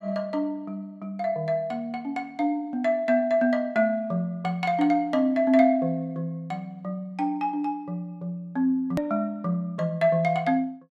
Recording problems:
edit click; at 9 s

